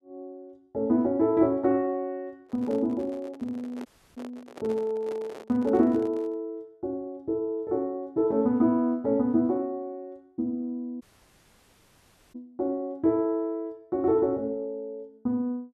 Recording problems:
handling noise; from 2.5 to 6.5 s; peak -10 dB vs average level
audio cutting out; at 4 s and at 11 s for 1.5 s

